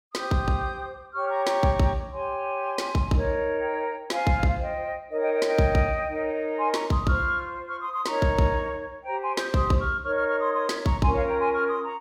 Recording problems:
none

